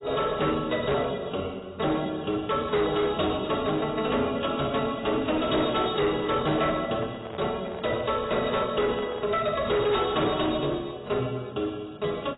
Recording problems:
codec artefacts; AAC, log-spectral distance 4 dB, nothing above 3.8 kHz
distorted audio; hard clipping, uneven, signal-to-distortion ratio 11 dB
handling noise; from 6 to 9.5 s; peak -6 dB vs average level

